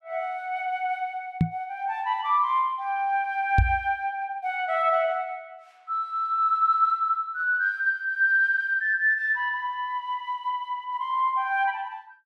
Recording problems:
microphone bump; at 1.5 s and at 3.5 s; peak +7 dB vs average level

